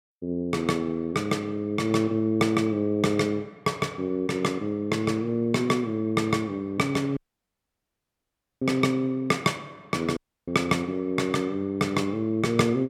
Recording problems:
audio cutting out; at 7 s for 1.5 s and at 10 s

